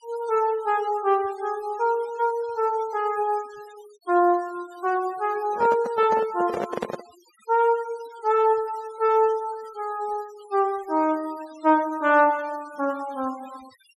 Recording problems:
denoising artefacts; signal-to-artefact ratio 23 dB
microphone handling noise; from 5.5 to 7 s; peak -1 dB vs average level

